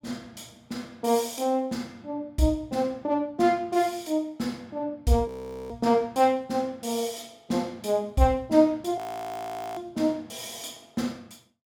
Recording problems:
audio freezing; at 5.5 s and at 9 s for 1 s

